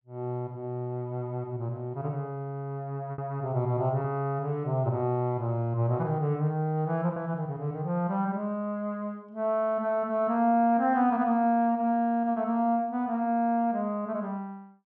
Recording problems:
packet loss; 1% of the sound replaced, filled with repeated pitch periods

